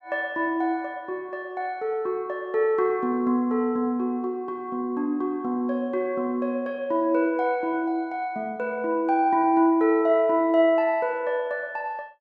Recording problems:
none

